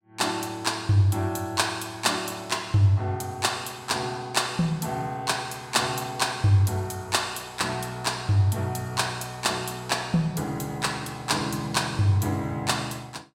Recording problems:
none

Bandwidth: 16.5 kHz